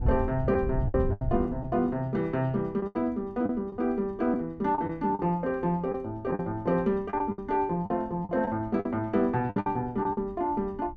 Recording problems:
wind noise; below 110 Hz, SNR 9 dB
packet loss; 9% of the sound replaced, filled with the last packet

